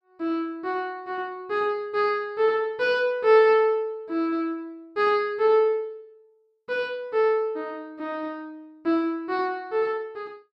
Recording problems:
none

